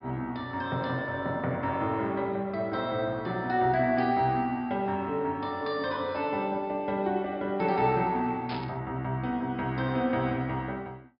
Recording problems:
treble cut off; nothing above 5.5 kHz
burst of static; at 8.5 s; peak -7 dB vs average level

